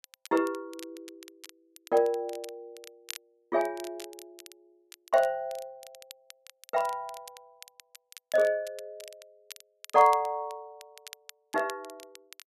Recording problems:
crackle; vinyl, SNR 20 dB

